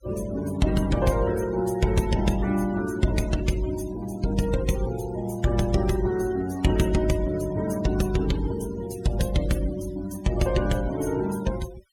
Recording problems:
denoising artefacts; signal-to-artefact ratio 16 dB

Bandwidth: 17.5 kHz